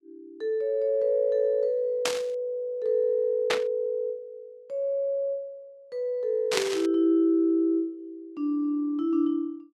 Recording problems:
burst of static; at 2 s, at 3.5 s and at 6.5 s; peak +4 dB vs average level

